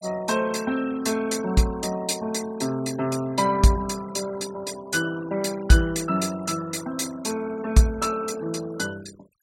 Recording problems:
denoising artefacts; signal-to-artefact ratio 17 dB

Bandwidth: 16.5 kHz